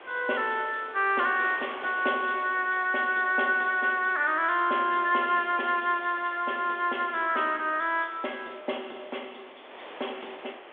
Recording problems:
telephone audio; 280 Hz to 3.5 kHz, G.726
wind noise; below 2.4 kHz, SNR 20 dB

